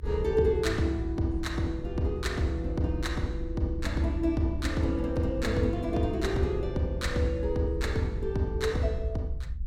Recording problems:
low-frequency rumble; below 70 Hz, SNR 7 dB

